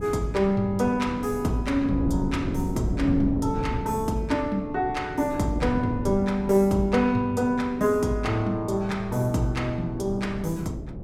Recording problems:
wind on the microphone; below 260 Hz, SNR 8 dB

